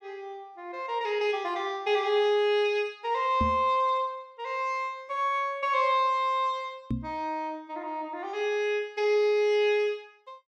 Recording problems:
microphone thump; at 3.5 s and at 7 s; peak +1 dB vs average level

